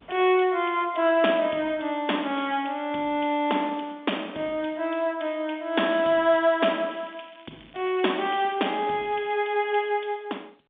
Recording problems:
phone line; 240 Hz to 3.6 kHz, G.711
crackle; from 7 to 9.5 s; loose cable, SNR 28 dB

